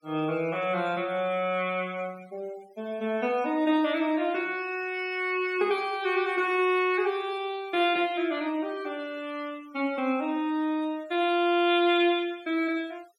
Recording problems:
noise reduction artefacts; signal-to-artefact ratio 25 dB

